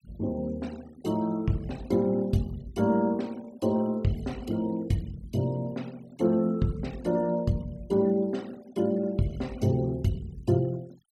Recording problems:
noise reduction artefacts; signal-to-artefact ratio 24 dB

